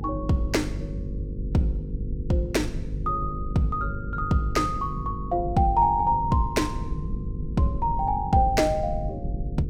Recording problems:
electrical hum; 50 Hz, harmonics up to 500 Hz, SNR 9 dB
low-frequency rumble; below 140 Hz, SNR 10 dB

